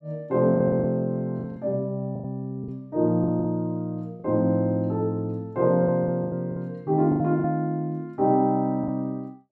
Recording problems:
packet loss; 8% of the sound replaced, filled with the last packet

